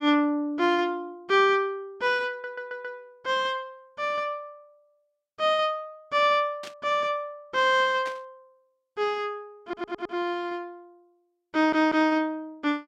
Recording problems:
stutter; at 2.5 s, at 9.5 s and at 12 s
burst of static; at 6.5 s and at 8 s; peak -10 dB vs average level

